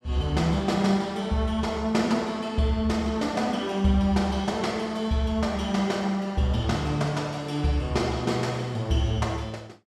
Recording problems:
none

